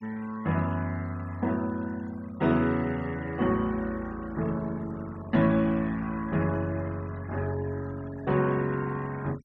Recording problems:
denoising artefacts; signal-to-artefact ratio 21 dB

